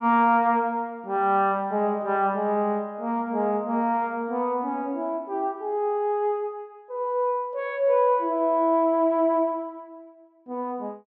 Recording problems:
low-pass filter; nothing above 8 kHz

